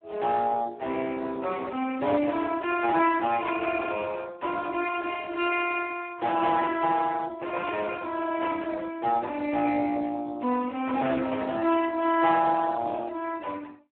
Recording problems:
telephone audio; 280 Hz to 3.2 kHz, Speex
static burst; at 3.5 s and at 8.5 s; peak -7 dB vs average level

